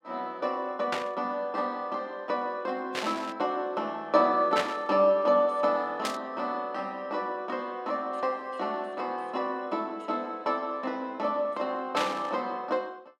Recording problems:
burst of static; 5 times, first at 1 s; peak +3 dB vs average level

